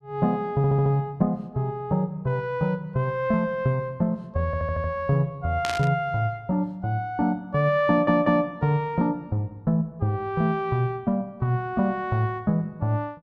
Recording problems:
audio stuttering; at 0.5 s, at 4.5 s and at 8 s
burst of static; at 5.5 s; peak -2 dB vs average level

